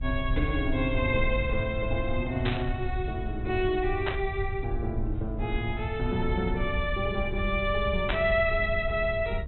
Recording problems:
treble cut off; nothing above 4 kHz
hum; 60 Hz, harmonics up to 2.4 kHz, SNR 25 dB
rumble; below 80 Hz, SNR 5 dB
static burst; at 2.5 s, at 4 s and at 8 s; peak +3 dB vs average level

